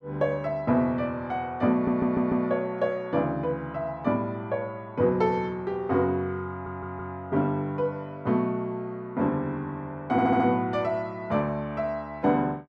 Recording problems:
audio stuttering; at 1.5 s, at 6.5 s and at 10 s

